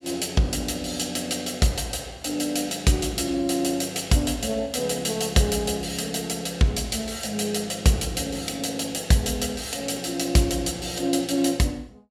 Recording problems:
none

